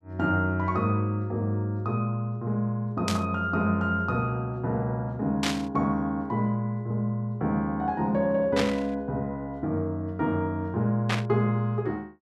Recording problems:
burst of static; 4 times, first at 3 s; peak +3 dB vs average level

